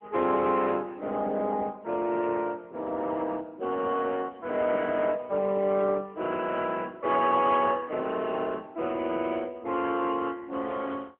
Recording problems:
telephone audio; 240 Hz to 3.3 kHz, AMR-NB

